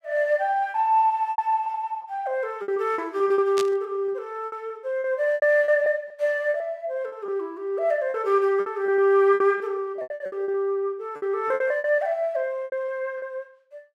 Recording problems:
packet loss; 13% of the sound replaced, filled with repeated pitch periods
burst of static; at 3.5 s; peak -3 dB vs average level

